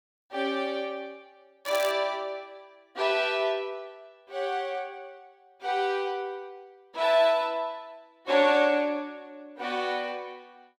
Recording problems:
crackling; at 1.5 s; loose cable, SNR 13 dB

